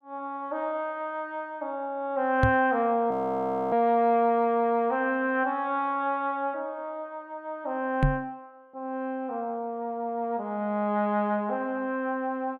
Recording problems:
knock on the microphone; at 2.5 s and at 8 s; peak +7 dB vs average level
audio freezing; at 3 s for 0.5 s

